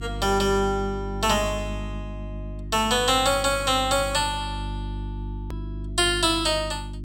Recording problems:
hum; 50 Hz, harmonics up to 350 Hz, SNR 11 dB
hard cut with a click; at 5.5 s

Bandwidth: 16 kHz